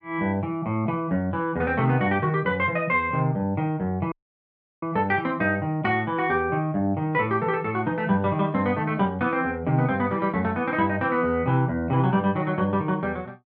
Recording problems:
dropout; at 4 s for 0.5 s

